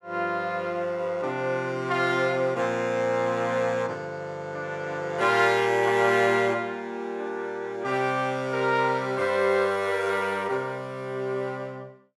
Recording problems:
none

